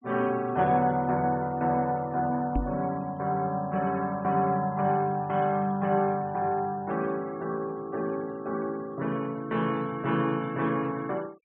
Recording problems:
treble missing; nothing above 4 kHz
noise reduction artefacts; signal-to-artefact ratio 26 dB
knock on the microphone; at 2.5 s; peak +2 dB vs average level

